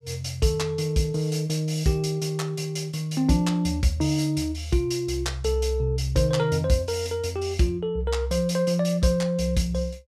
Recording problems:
none

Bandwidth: 15 kHz